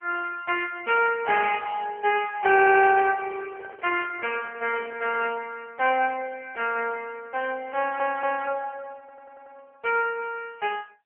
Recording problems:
telephone audio; 340 Hz to 3.1 kHz, AMR-NB
audio stuttering; at 2.5 s, at 8 s and at 9 s
microphone handling noise; from 3 to 5.5 s; peak -14 dB vs average level

